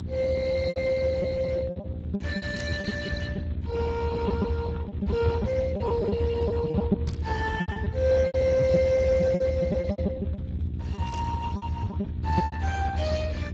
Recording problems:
lossy codec; Speex, log-spectral distance 3 dB
hum; 60 Hz, harmonics up to 720 Hz, SNR 10 dB
rumble; below 200 Hz, strongest tone 78 Hz, SNR 3 dB
packet loss; 15% of the sound replaced, filled with repeated pitch periods
static burst; at 2.5 s, at 7 s and at 11 s; peak -8 dB vs average level

